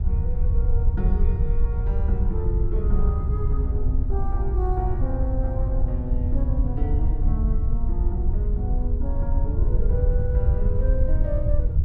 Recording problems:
wind on the microphone; below 74 Hz, SNR -9 dB

